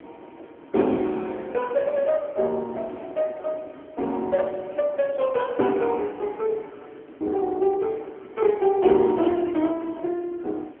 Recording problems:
phone line; 240 Hz to 3.3 kHz, AMR-NB
wind on the microphone; below 520 Hz, SNR 21 dB

